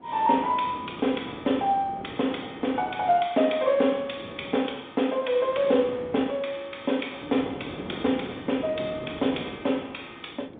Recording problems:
telephone audio; 190 Hz to 3.6 kHz, G.711
wind noise; below 530 Hz, SNR 14 dB

